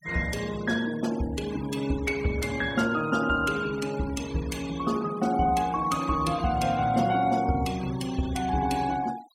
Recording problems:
noise reduction artefacts; signal-to-artefact ratio 17 dB

